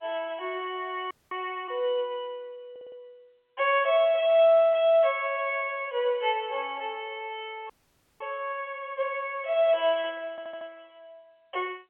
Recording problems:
telephone audio; 320 Hz to 3.3 kHz, G.711
audio freezing; at 1 s and at 7.5 s
audio stuttering; at 2.5 s and at 10 s

